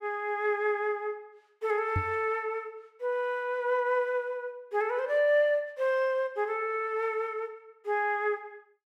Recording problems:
microphone bump; at 2 s; peak +2 dB vs average level

